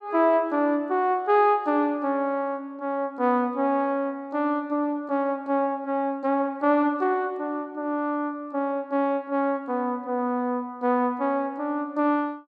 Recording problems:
none

